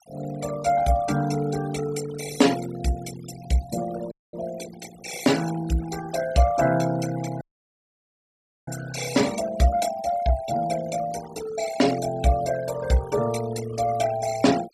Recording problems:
noise reduction artefacts; signal-to-artefact ratio 13 dB
audio cutting out; at 4 s and at 7.5 s for 1.5 s

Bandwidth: 14 kHz